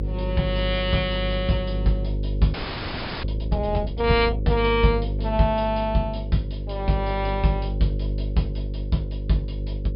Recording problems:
treble cut off; nothing above 5.5 kHz
mains hum; 50 Hz, harmonics up to 550 Hz, SNR 4 dB
audio freezing; at 2.5 s for 0.5 s

